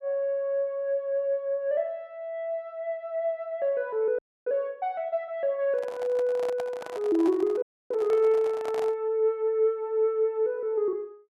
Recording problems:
dropout; at 4 s and at 7.5 s
microphone handling noise; from 5.5 to 9 s; peak -5 dB vs average level

